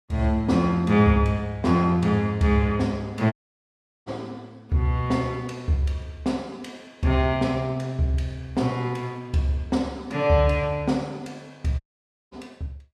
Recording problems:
audio cutting out; at 3.5 s for 0.5 s and at 12 s for 0.5 s

